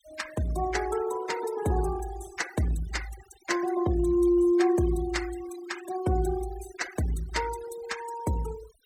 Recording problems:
denoising artefacts; signal-to-artefact ratio 14 dB

